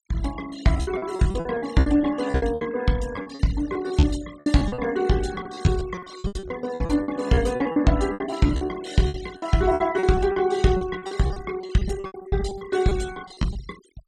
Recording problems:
noise reduction artefacts; signal-to-artefact ratio 17 dB
lost packets; 19% of the sound replaced, filled with repeated pitch periods

